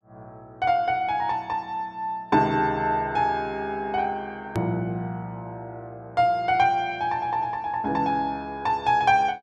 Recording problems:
edit click; at 4.5 s

